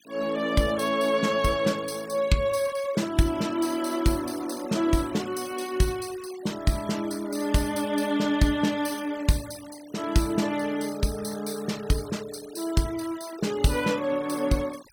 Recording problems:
noise reduction artefacts; signal-to-artefact ratio 18 dB

